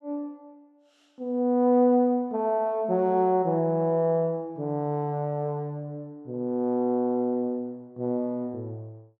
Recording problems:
none

